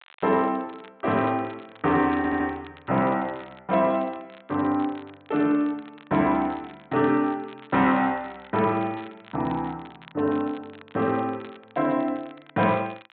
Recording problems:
treble cut off; nothing above 4 kHz
crackling; vinyl, SNR 24 dB
stutter; at 2 s

